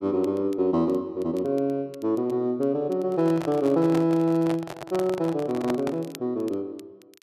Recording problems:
crackling; vinyl, SNR 29 dB
microphone handling noise; from 3 to 6 s; peak -2 dB vs average level

